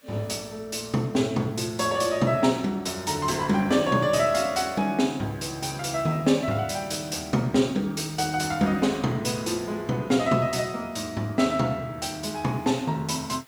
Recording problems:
background hiss; slope 0 dB per octave, SNR 28 dB

